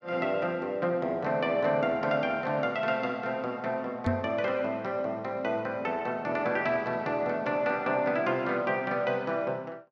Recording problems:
microphone bump; at 4 s; peak +4 dB vs average level

